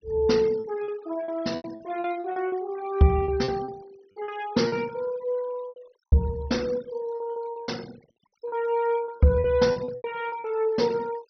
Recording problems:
low-pass filter; nothing above 6 kHz
denoising artefacts; signal-to-artefact ratio 21 dB
packet loss; 12% of the sound replaced, filled with repeated pitch periods

